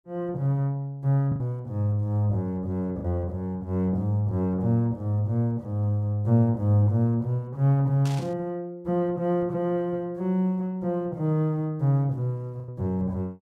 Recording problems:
packet loss; 1.5% of the sound replaced, filled with the last packet
static burst; at 8 s; peak -9 dB vs average level

